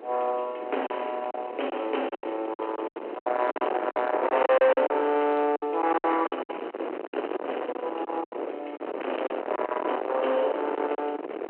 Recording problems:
telephone audio; 320 Hz to 3.1 kHz, G.726
distortion; soft clipping, signal-to-distortion ratio 10 dB
wind on the microphone; below 980 Hz, SNR 7 dB
lost packets; 11% of the sound replaced, filled with silence

